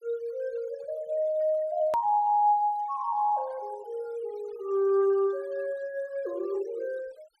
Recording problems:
noise reduction artefacts; signal-to-artefact ratio 27 dB
hard cut with a click; at 2 s

